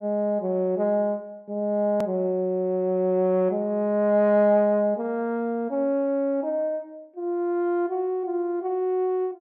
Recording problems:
hard cut with a click; at 2 s

